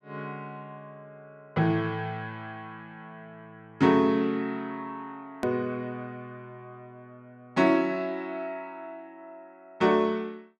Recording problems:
hard cut with a click; at 5.5 s

